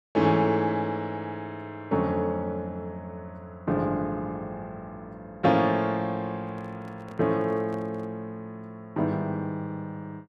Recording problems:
microphone handling noise; from 6.5 to 8 s; peak -12 dB vs average level

